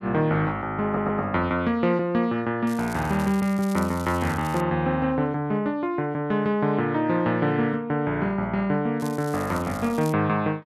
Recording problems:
stutter; at 1 s
crackle; from 2.5 to 4.5 s and from 9 to 10 s; loose cable, SNR 19 dB

